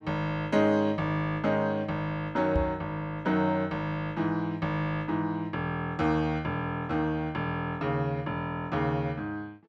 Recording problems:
microphone bump; at 2.5 s; peak +3 dB vs average level

